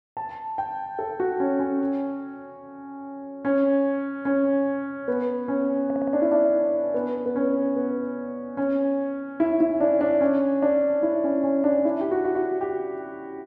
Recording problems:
audio stuttering; at 6 s and at 12 s

